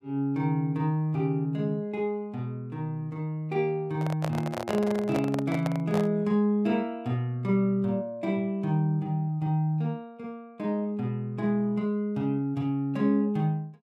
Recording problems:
microphone handling noise; from 4 to 6 s; peak 0 dB vs average level

